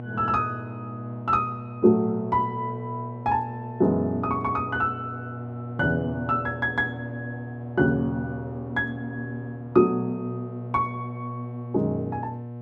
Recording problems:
electrical hum; 60 Hz, harmonics up to 840 Hz, SNR 10 dB

